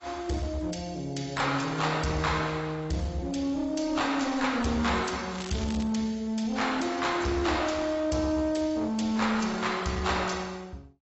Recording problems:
lossy codec; AAC, log-spectral distance 4 dB, nothing above 7.6 kHz
distorted audio; hard clipping, uneven, signal-to-distortion ratio 10 dB
crackle; at 5.5 s; loose cable, SNR 14 dB

